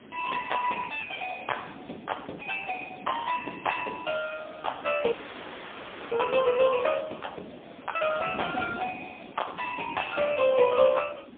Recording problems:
telephone audio; 220 Hz to 3.5 kHz, AMR-NB, then MP3
background hiss; SNR 27 dB
wind on the microphone; below 380 Hz, SNR 16 dB
audio freezing; at 5 s for 1 s

